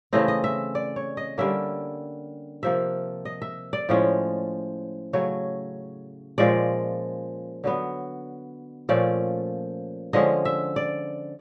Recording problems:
none

